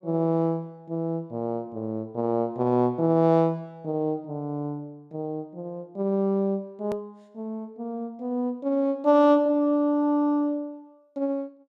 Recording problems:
hard cut with a click; at 7 s

